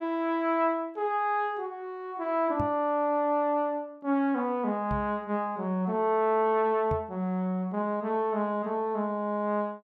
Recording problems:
knock on the microphone; at 2.5 s, at 5 s and at 7 s; peak -1 dB vs average level

